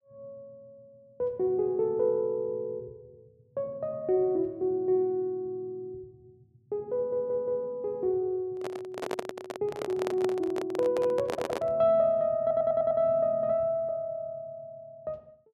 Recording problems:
stutter; at 7 s, at 11 s and at 12 s
handling noise; from 8.5 to 12 s; peak 0 dB vs average level

